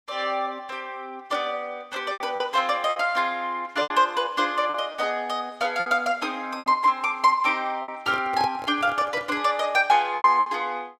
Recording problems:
packet loss; 6% of the sound replaced, filled with repeated pitch periods
microphone handling noise; from 8 to 9.5 s; peak -6 dB vs average level

